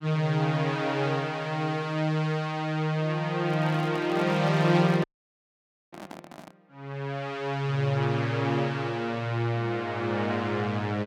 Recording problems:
microphone handling noise; from 3.5 to 6.5 s; peak -8 dB vs average level
dropout; at 5 s for 1 s

